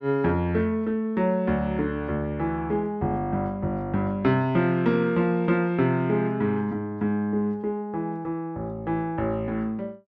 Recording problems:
none

